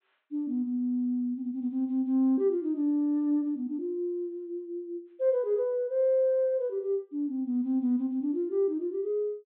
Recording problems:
treble cut off; nothing above 4 kHz

